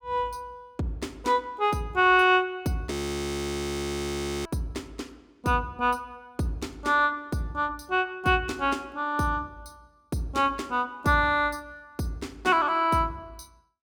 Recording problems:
audio freezing; at 3 s for 1.5 s

